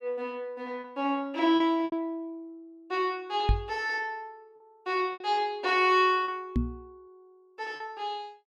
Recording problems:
packet loss; 4% of the sound replaced, filled with repeated pitch periods
microphone thump; at 3.5 s and at 6.5 s; peak +6 dB vs average level

